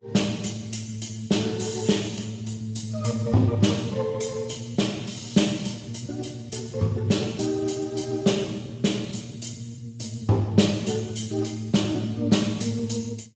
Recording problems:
lossy compression; Vorbis, then Speex, log-spectral distance 6 dB, nothing above 7.6 kHz

